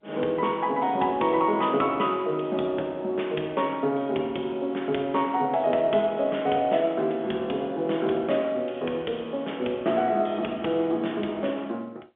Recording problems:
telephone audio; 170 Hz to 3.5 kHz, G.711

